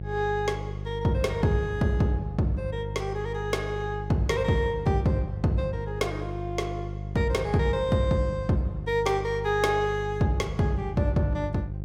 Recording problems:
electrical hum; 50 Hz, harmonics up to 550 Hz, SNR 8 dB

